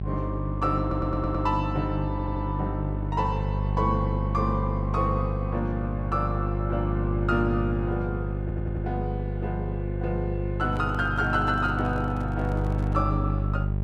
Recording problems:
electrical hum; 50 Hz, harmonics up to 600 Hz, SNR 0 dB
stutter; at 1 s, at 2 s and at 8.5 s
handling noise; from 11 to 13 s; peak -11 dB vs average level

